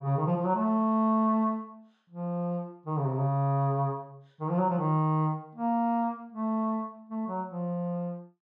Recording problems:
none

